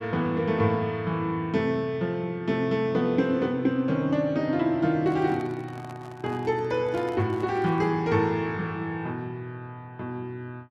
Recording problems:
microphone handling noise; from 5 to 8 s; peak -10 dB vs average level

